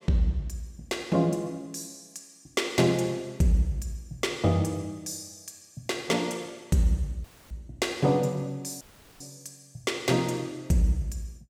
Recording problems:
dropout; at 7 s and at 9 s

